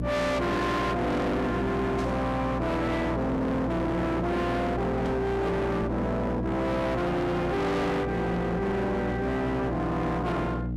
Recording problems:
distorted audio; hard clipping, signal-to-distortion ratio 6 dB
hum; 60 Hz, harmonics up to 780 Hz, SNR 5 dB
burst of static; at 2 s and at 5 s; peak -14 dB vs average level

